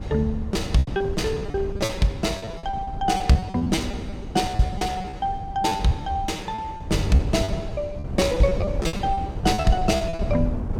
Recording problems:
wind noise; below 160 Hz, SNR 8 dB
lost packets; 20% of the sound replaced, filled with repeated pitch periods

